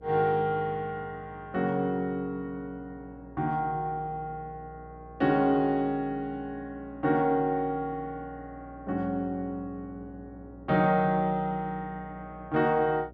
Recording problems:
electrical hum; 60 Hz, harmonics up to 660 Hz, SNR 21 dB

